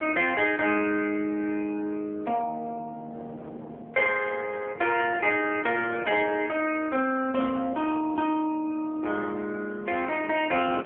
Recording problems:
telephone audio; 320 Hz to 3.1 kHz, AMR-NB
wind noise; below 590 Hz, SNR 20 dB

